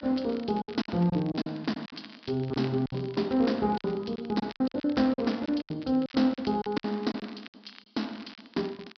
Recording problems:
low-pass filter; nothing above 5.5 kHz
crackle; vinyl, SNR 21 dB
packet loss; 14% of the sound replaced, filled with silence

